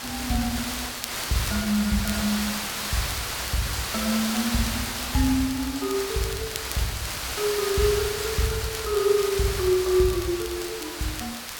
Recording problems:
hiss; slope 0 dB per octave, SNR 3 dB
crackle; vinyl, SNR 15 dB

